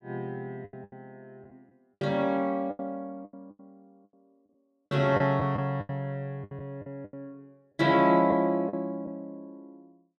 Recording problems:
packet loss; 11% of the sound replaced, filled with the last packet

